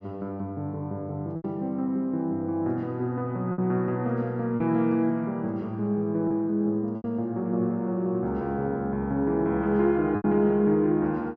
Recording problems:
low-pass filter; nothing above 6.8 kHz
packet loss; 3% of the sound replaced, filled with repeated pitch periods

